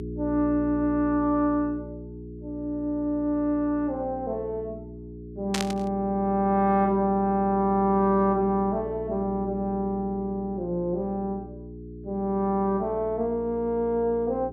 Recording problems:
hum; 60 Hz, harmonics up to 420 Hz, SNR 13 dB
burst of static; at 5.5 s; peak +2 dB vs average level

